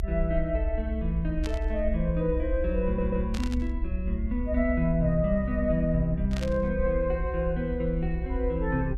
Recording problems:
low-frequency rumble; below 64 Hz, SNR 4 dB
static burst; at 1.5 s, at 3.5 s and at 6.5 s; peak -6 dB vs average level
audio stuttering; at 3 s

